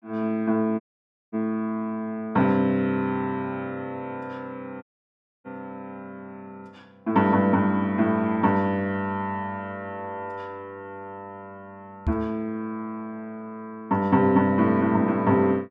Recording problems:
dropout; at 1 s for 0.5 s and at 5 s for 0.5 s
microphone thump; at 12 s; peak +1 dB vs average level

